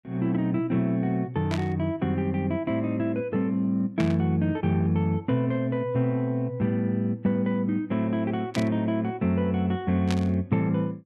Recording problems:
static burst; 4 times, first at 1.5 s; peak -3 dB vs average level

